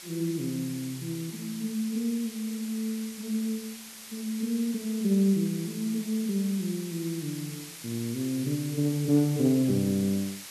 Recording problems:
background hiss; slope +2 dB per octave, SNR 12 dB

